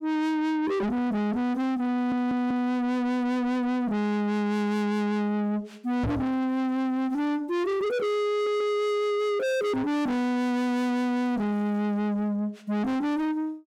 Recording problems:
distorted audio; soft clipping, signal-to-distortion ratio 6 dB
stutter; at 2 s and at 8.5 s
microphone thump; at 6 s; peak +4 dB vs average level

